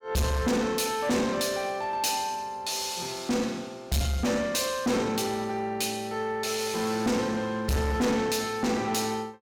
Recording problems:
distorted audio; soft clipping, signal-to-distortion ratio 7 dB

